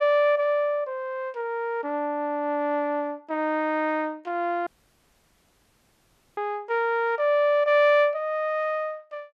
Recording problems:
audio cutting out; at 4.5 s for 1.5 s

